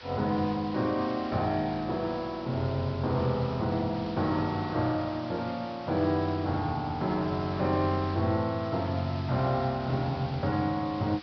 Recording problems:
treble missing; nothing above 5.5 kHz
background hiss; SNR 17 dB

